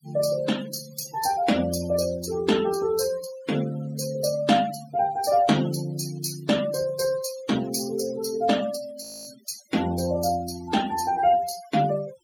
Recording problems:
denoising artefacts; signal-to-artefact ratio 14 dB
frozen audio; at 9 s

